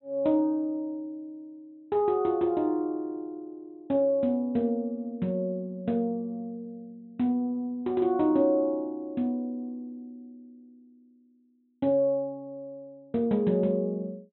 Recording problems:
treble cut off; nothing above 4 kHz

